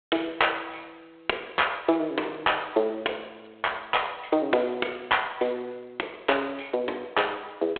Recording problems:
telephone audio; 300 Hz to 3.4 kHz, G.726

